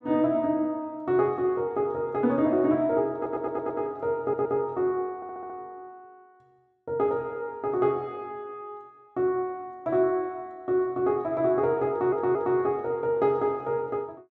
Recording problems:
stutter; 4 times, first at 3 s

